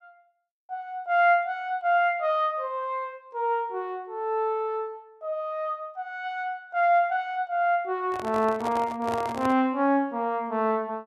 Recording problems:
handling noise; from 8 to 9.5 s; peak -3 dB vs average level

